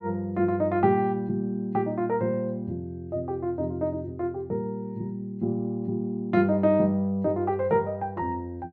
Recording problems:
none

